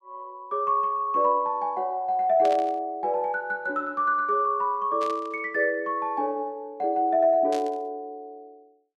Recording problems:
burst of static; at 2.5 s, at 5 s and at 7.5 s; peak -9 dB vs average level

